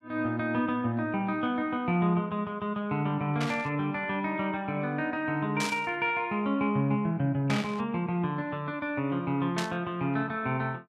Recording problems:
static burst; 4 times, first at 3.5 s; peak 0 dB vs average level

